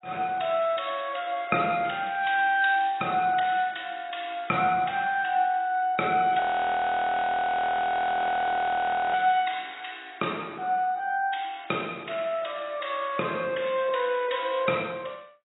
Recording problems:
codec artefacts; AAC, log-spectral distance 5 dB, nothing above 3.8 kHz
frozen audio; at 6.5 s for 2.5 s

